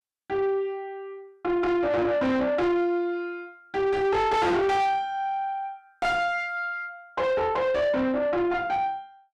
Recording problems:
distorted audio; soft clipping, signal-to-distortion ratio 6 dB

